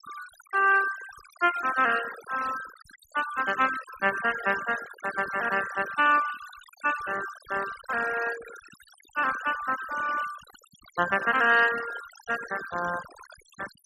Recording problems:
noise reduction artefacts; signal-to-artefact ratio 13 dB

